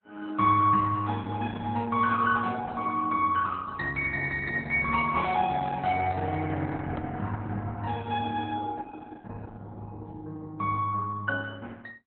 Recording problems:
lossy compression; Opus, log-spectral distance 3 dB
handling noise; from 5.5 to 7 s; peak 0 dB vs average level

